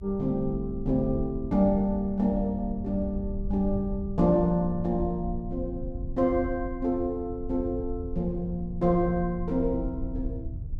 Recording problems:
low-frequency rumble; below 84 Hz, SNR 10 dB

